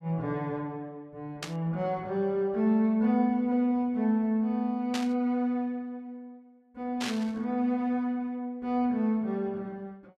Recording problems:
burst of static; at 1.5 s, at 5 s and at 7 s; peak -2 dB vs average level

